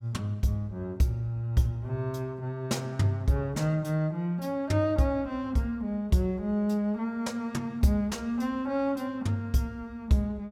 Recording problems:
none

